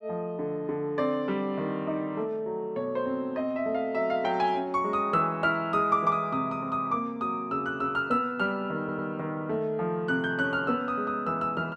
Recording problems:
audio stuttering; at 9 s

